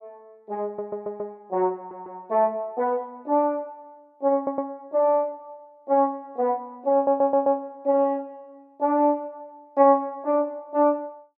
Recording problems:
stutter; 4 times, first at 0.5 s

